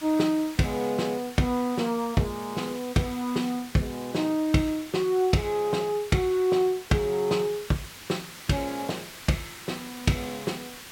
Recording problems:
hiss; slope 0 dB per octave, SNR 15 dB

